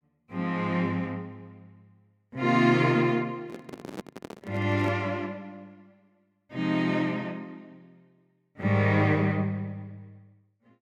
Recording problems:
handling noise; from 3.5 to 5 s; peak -6 dB vs average level

